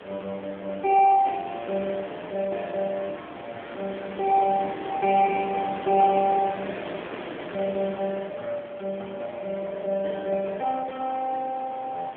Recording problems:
phone line; 300 Hz to 3.5 kHz, AMR-NB
wind noise; below 1.9 kHz, SNR 13 dB

